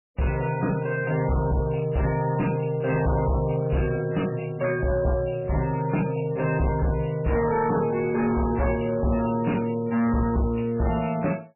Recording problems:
codec artefacts; MP3, log-spectral distance 5 dB, nothing above 2.7 kHz
distorted audio; hard clipping, signal-to-distortion ratio 10 dB

